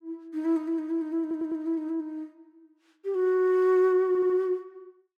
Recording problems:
stutter; at 1 s and at 4 s

